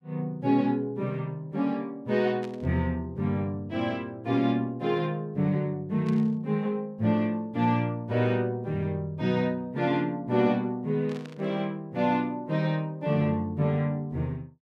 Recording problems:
static burst; at 2.5 s, at 6 s and at 11 s; peak -14 dB vs average level

